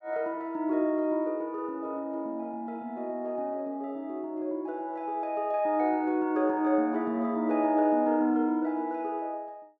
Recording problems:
none

